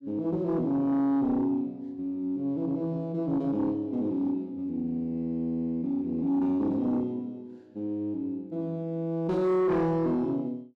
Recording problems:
distortion; soft clipping, signal-to-distortion ratio 12 dB

